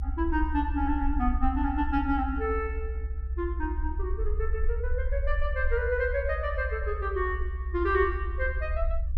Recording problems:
rumble; below 68 Hz, SNR 2 dB

